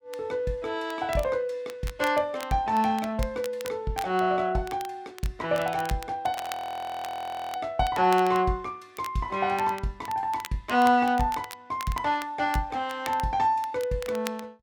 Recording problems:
crackling; vinyl, SNR 17 dB
frozen audio; at 6.5 s for 1 s

